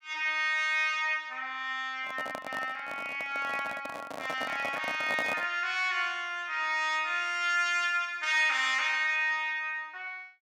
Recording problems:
microphone handling noise; from 2 to 5.5 s; peak -2 dB vs average level

